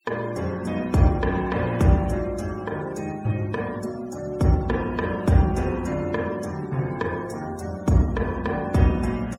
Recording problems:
noise reduction artefacts; signal-to-artefact ratio 24 dB

